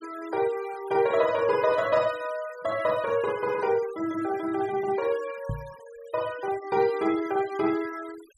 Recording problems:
denoising artefacts; signal-to-artefact ratio 20 dB
microphone thump; at 5.5 s; peak -2 dB vs average level

